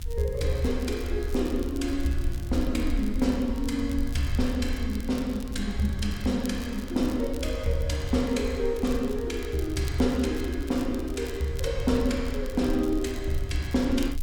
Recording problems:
background hiss; SNR 30 dB
low-frequency rumble; below 70 Hz, SNR 8 dB
crackle; vinyl, SNR 20 dB

